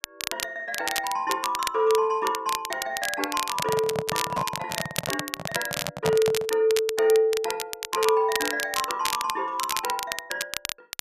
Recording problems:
crackling; vinyl, SNR 5 dB
handling noise; from 3.5 to 6.5 s; peak +3 dB vs average level

